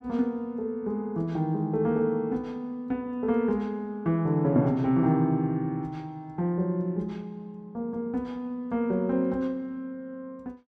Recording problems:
none

